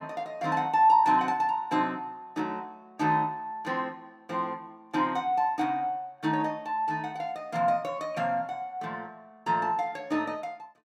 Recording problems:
none

